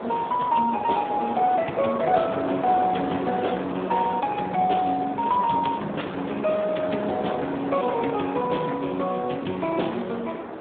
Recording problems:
telephone audio; 190 Hz to 3.6 kHz, Speex
wind noise; below 920 Hz, SNR 8 dB

